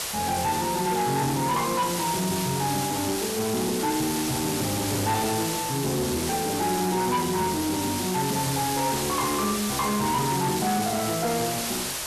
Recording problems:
distorted audio; soft clipping, signal-to-distortion ratio 11 dB
background hiss; slope -1 dB per octave, SNR 3 dB

